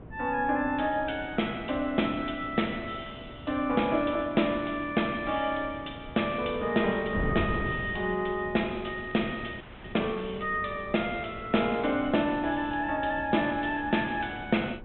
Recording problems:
treble cut off; nothing above 3.6 kHz
hum; 60 Hz, harmonics up to 1.6 kHz, SNR 24 dB
wind on the microphone; below 300 Hz, SNR 14 dB
crackle; from 8.5 to 10 s; loose cable, SNR 27 dB
frozen audio; at 9.5 s

